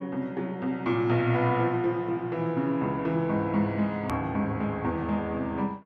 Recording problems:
click at an edit; at 4 s

